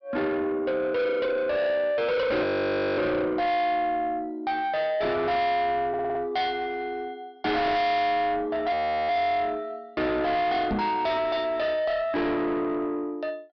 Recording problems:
treble missing; nothing above 5.5 kHz
distorted audio; soft clipping, signal-to-distortion ratio 6 dB
audio freezing; at 2.5 s for 0.5 s and at 8.5 s
audio stuttering; at 6 s
microphone thump; at 11 s; peak +2 dB vs average level

